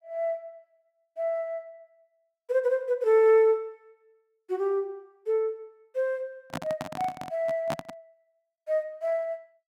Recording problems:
microphone handling noise; from 6.5 to 8 s; peak -1 dB vs average level

